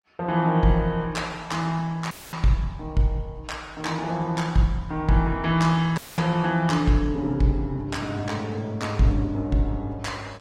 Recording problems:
lossy compression; Opus, log-spectral distance 2 dB, nothing above 16.1 kHz
audio cutting out; at 2 s and at 6 s; filled with static

